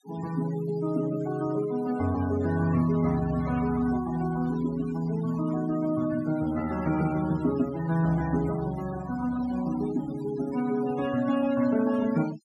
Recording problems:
noise reduction artefacts; signal-to-artefact ratio 15 dB

